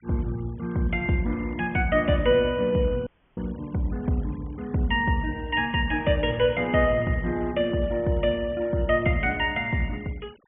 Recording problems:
low-pass filter; nothing above 3.4 kHz
denoising artefacts; signal-to-artefact ratio 26 dB
audio cutting out; at 3 s

